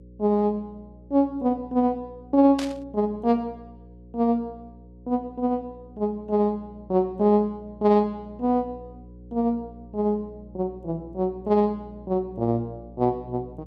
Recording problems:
hum; 60 Hz, harmonics up to 540 Hz, SNR 21 dB
burst of static; at 2.5 s; peak -5 dB vs average level

